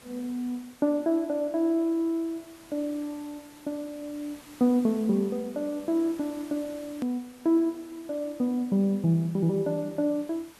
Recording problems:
background hiss; slope -2 dB per octave, SNR 23 dB
click at an edit; at 7 s

